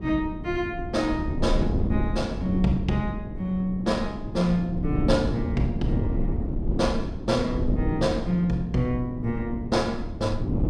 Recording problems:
wind on the microphone; below 230 Hz, SNR 3 dB

